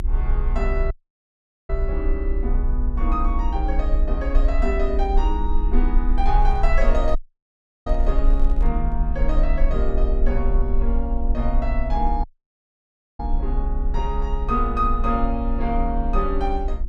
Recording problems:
hum; 50 Hz, harmonics up to 350 Hz, SNR 13 dB
rumble; below 50 Hz, strongest tone 28 Hz, SNR -2 dB
audio cutting out; at 1 s for 1 s, at 7 s for 0.5 s and at 12 s for 1 s
handling noise; from 6.5 to 9 s; peak -11 dB vs average level

